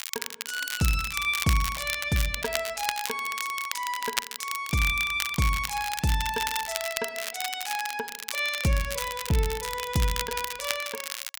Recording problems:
crackling; vinyl, SNR 5 dB

